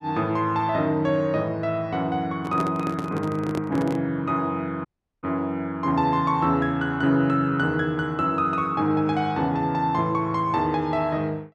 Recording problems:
handling noise; from 2.5 to 4 s; peak -2 dB vs average level
dropout; at 5 s

